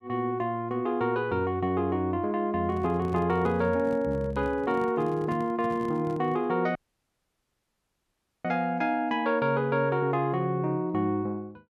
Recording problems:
handling noise; from 2.5 to 6.5 s; peak -8 dB vs average level
audio cutting out; at 7 s for 1.5 s

